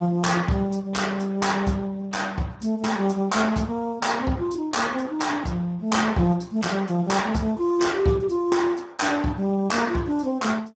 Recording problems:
codec artefacts; Speex, log-spectral distance 3 dB, nothing above 7.6 kHz

